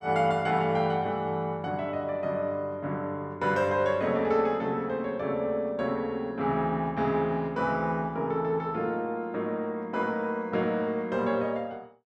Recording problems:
none

